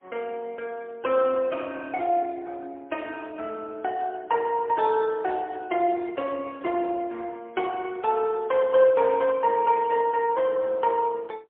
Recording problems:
phone line; 300 Hz to 3.5 kHz, AMR-NB, then MP3

